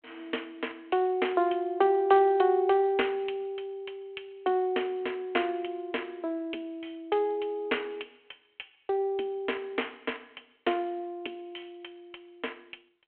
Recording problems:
telephone audio; 300 Hz to 3.3 kHz, G.726

